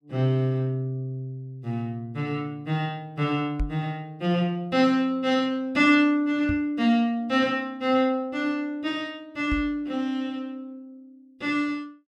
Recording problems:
microphone thump; at 3.5 s, at 6.5 s and at 9.5 s; peak 0 dB vs average level

